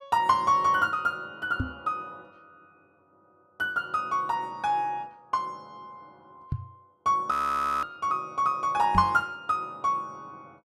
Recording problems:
microphone bump; at 1.5 s, at 6.5 s and at 9 s; peak +1 dB vs average level
frozen audio; at 7.5 s for 0.5 s

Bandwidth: 14 kHz